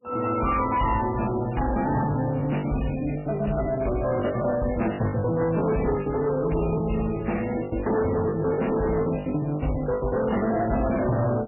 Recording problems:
lossy compression; MP3, log-spectral distance 7 dB, nothing above 2.9 kHz
distortion; hard clipping, signal-to-distortion ratio 10 dB
packet loss; 13% of the sound replaced, filled with the last packet

